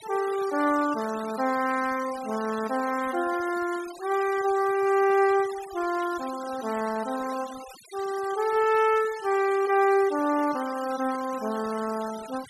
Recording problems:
denoising artefacts; signal-to-artefact ratio 17 dB

